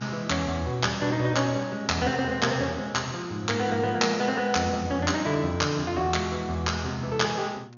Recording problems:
low-pass filter; nothing above 6.9 kHz
hum; 60 Hz, harmonics up to 1.4 kHz, SNR 22 dB

